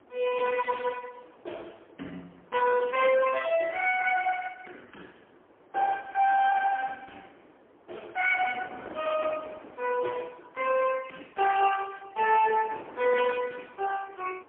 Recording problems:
telephone audio; 240 Hz to 2.9 kHz, AMR-NB, then MP3
distortion; hard clipping, signal-to-distortion ratio 12 dB
wind on the microphone; below 1 kHz, SNR 22 dB

